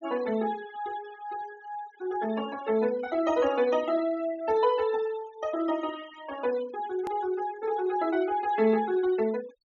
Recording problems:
treble cut off; nothing above 7 kHz
noise reduction artefacts; signal-to-artefact ratio 18 dB
hard cut with a click; at 7 s

